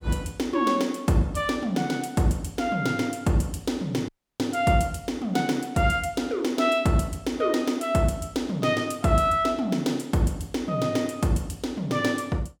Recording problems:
dropout; at 4 s

